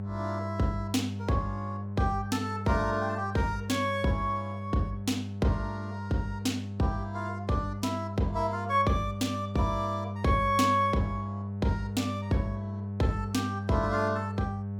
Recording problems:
hum; 50 Hz, harmonics up to 700 Hz, SNR 6 dB

